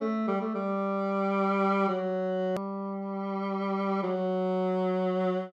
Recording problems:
click at an edit; at 2.5 s

